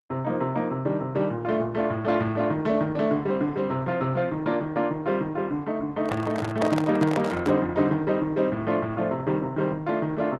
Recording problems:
codec artefacts; Opus, log-spectral distance 2 dB
handling noise; from 6 to 7.5 s; peak +1 dB vs average level

